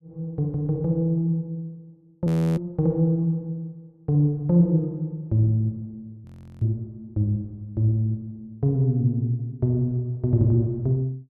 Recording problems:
audio freezing; at 2.5 s and at 6.5 s

